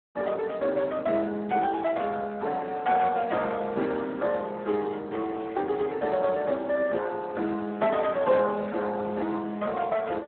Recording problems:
telephone audio; 220 Hz to 3.8 kHz, Speex

